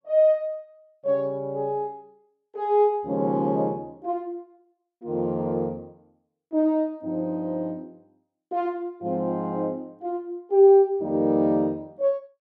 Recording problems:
none

